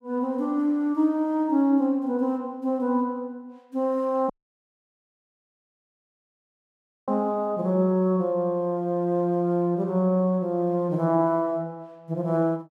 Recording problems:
dropout; at 4.5 s for 3 s

